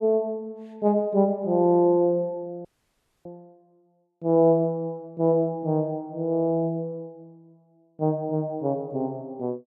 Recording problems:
audio cutting out; at 2.5 s for 0.5 s

